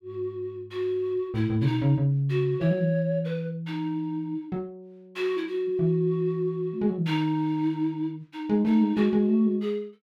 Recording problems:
none

